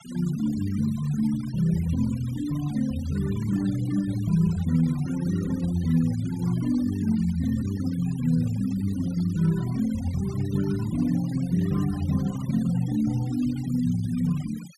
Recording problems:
denoising artefacts; signal-to-artefact ratio 20 dB

